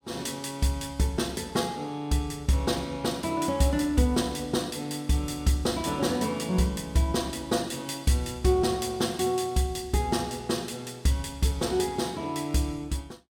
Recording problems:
none

